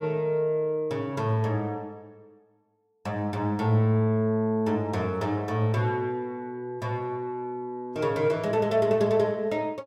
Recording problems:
none

